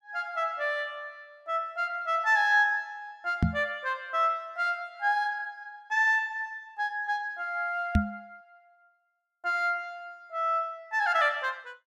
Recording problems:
microphone thump; at 3.5 s and at 8 s; peak +8 dB vs average level

